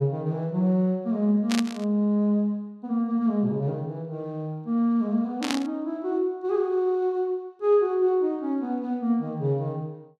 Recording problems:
static burst; at 1.5 s and at 5.5 s; peak +1 dB vs average level

